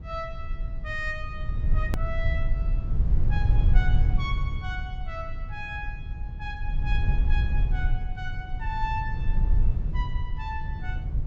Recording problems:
low-pass filter; nothing above 8 kHz
low-frequency rumble; below 70 Hz, SNR -8 dB
hard cut with a click; at 2 s

